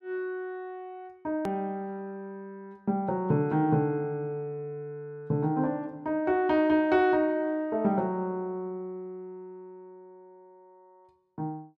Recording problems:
hard cut with a click; at 1.5 s

